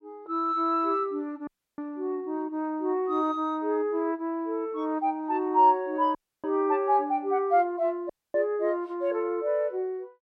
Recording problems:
audio cutting out; at 1.5 s, at 6 s and at 8 s

